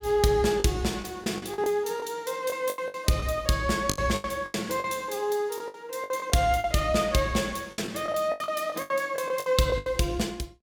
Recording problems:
lost packets; 14% of the sound replaced, filled with the last packet

